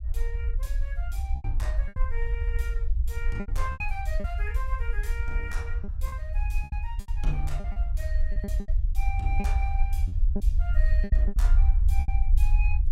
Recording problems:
rumble; below 58 Hz, SNR -11 dB
packet loss; 10% of the sound replaced, filled with repeated pitch periods

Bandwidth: 16.5 kHz